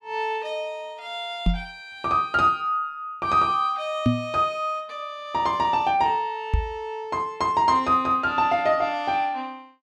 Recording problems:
knock on the microphone; at 1.5 s, at 4 s and at 6.5 s; peak +7 dB vs average level

